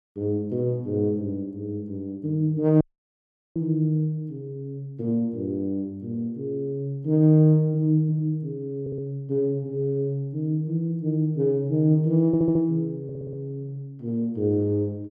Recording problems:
audio cutting out; at 3 s for 1 s
audio stuttering; at 9 s, at 12 s and at 13 s

